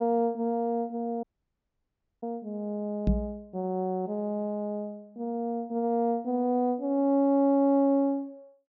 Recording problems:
treble cut off; nothing above 8 kHz
dropout; at 1 s for 1 s
knock on the microphone; at 3 s; peak +6 dB vs average level

